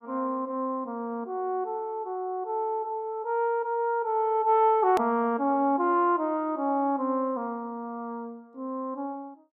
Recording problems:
edit click; at 5 s

